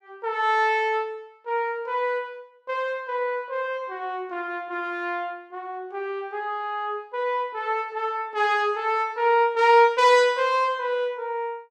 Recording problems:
none

